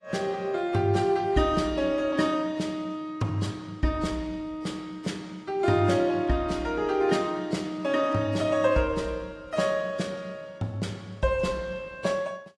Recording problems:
lossy compression; AAC, log-spectral distance 2 dB, nothing above 11.3 kHz

